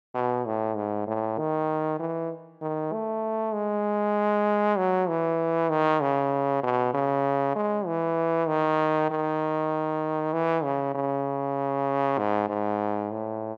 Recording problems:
none

